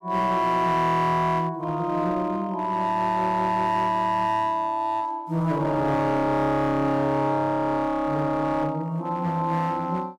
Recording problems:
distortion; hard clipping, uneven, signal-to-distortion ratio 11 dB

